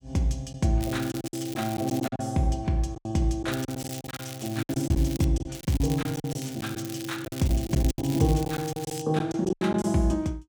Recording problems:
packet loss; 12% of the sound replaced, filled with silence
crackle; from 1 to 2 s, from 3.5 to 5 s and from 5.5 to 9 s; loose cable, SNR 14 dB

